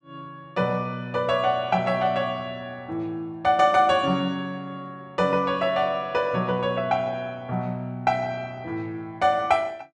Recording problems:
none

